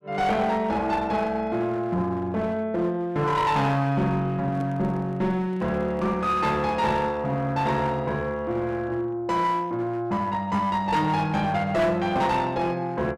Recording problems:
distorted audio; hard clipping, uneven, signal-to-distortion ratio 10 dB
handling noise; from 4.5 to 6.5 s; peak -10 dB vs average level

